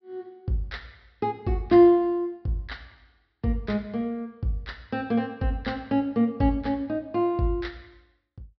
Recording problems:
low-pass filter; nothing above 5.5 kHz

